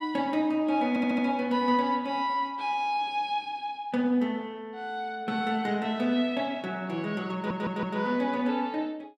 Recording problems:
audio stuttering; at 1 s and at 7.5 s

